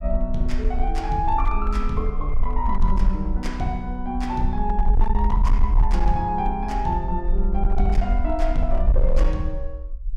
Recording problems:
distorted audio; hard clipping, signal-to-distortion ratio 11 dB
low-frequency rumble; below 46 Hz, SNR -1 dB

